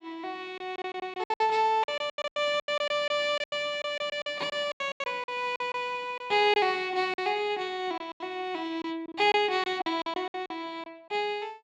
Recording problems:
packet loss; 14% of the sound replaced, filled with silence

